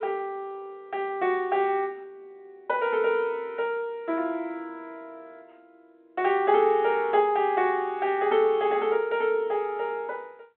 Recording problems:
phone line; 170 Hz to 3.8 kHz, G.726

